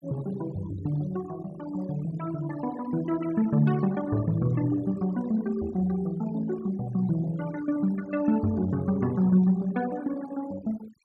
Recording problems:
denoising artefacts; signal-to-artefact ratio 20 dB

